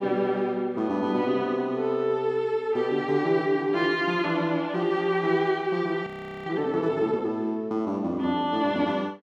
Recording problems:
audio freezing; at 6 s

